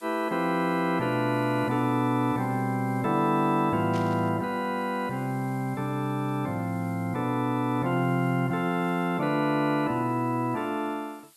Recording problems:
background hiss; slope +3 dB per octave, SNR 27 dB
burst of static; at 4 s; peak -12 dB vs average level

